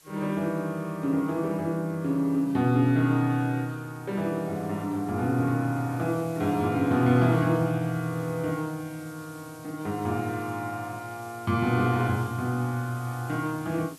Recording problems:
hiss; slope 0 dB per octave, SNR 24 dB

